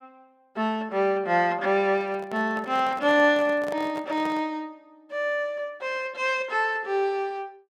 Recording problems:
microphone handling noise; from 2 to 4.5 s; peak -7 dB vs average level

